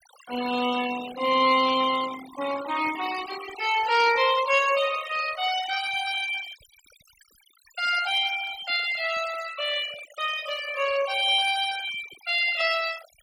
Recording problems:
denoising artefacts; signal-to-artefact ratio 13 dB

